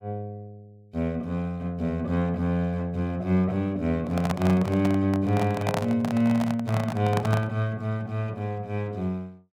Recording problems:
microphone handling noise; from 4 to 7.5 s; peak +2 dB vs average level

